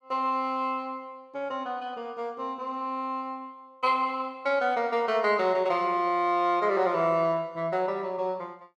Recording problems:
none

